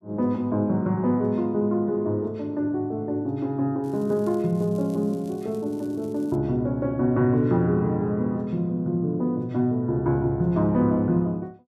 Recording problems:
crackle; from 4 to 6.5 s; loose cable, SNR 30 dB

